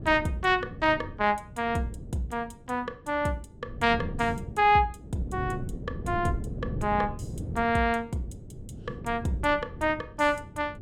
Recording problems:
wind on the microphone; below 220 Hz, SNR 11 dB

